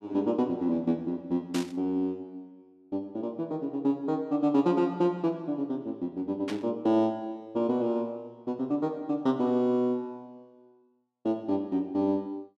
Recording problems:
burst of static; at 1.5 s and at 6.5 s; peak -4 dB vs average level

